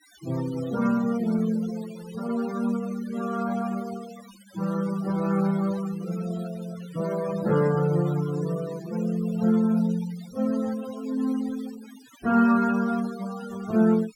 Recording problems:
noise reduction artefacts; signal-to-artefact ratio 18 dB

